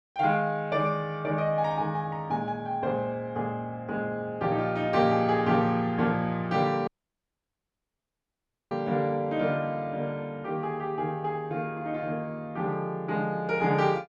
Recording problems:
dropout; at 7 s for 2 s

